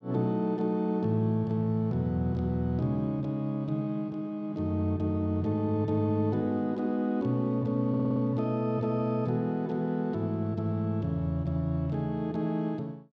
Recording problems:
stutter; at 8 s

